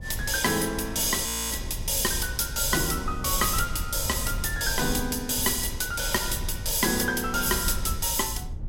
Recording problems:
low-frequency rumble; below 90 Hz, SNR 11 dB
frozen audio; at 1.5 s

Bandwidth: 16 kHz